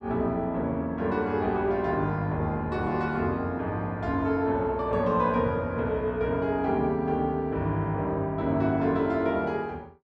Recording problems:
none

